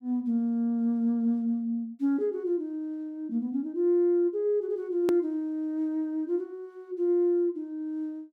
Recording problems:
click at an edit; at 5 s

